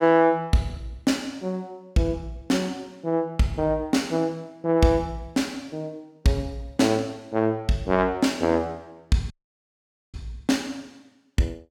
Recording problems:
dropout; at 9.5 s for 1 s

